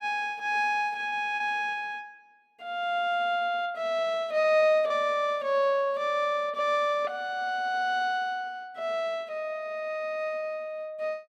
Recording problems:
lost packets; 1.9% of the sound replaced, filled with repeated pitch periods

